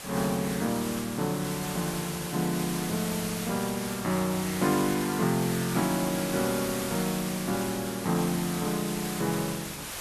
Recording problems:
background hiss; slope -1 dB per octave, SNR 6 dB

